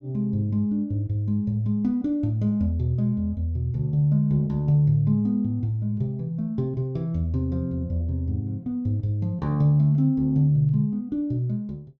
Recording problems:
none

